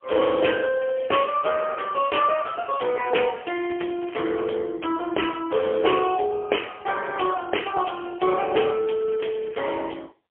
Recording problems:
phone line; 320 Hz to 3.2 kHz, AMR-NB, then MP3
crackle; from 1 to 4.5 s and at 9 s; loose cable, SNR 23 dB

